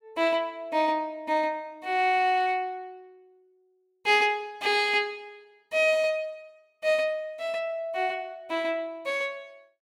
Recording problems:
none

